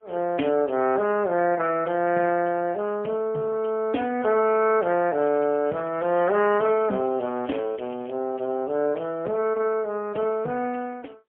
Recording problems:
telephone audio; 220 Hz to 2.9 kHz, AMR-NB, then MP3
crackling; from 5 to 8 s; loose cable, SNR 27 dB

